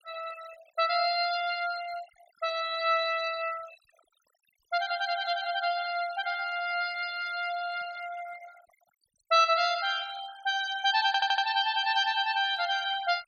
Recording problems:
noise reduction artefacts; signal-to-artefact ratio 18 dB
audio stuttering; at 11 s

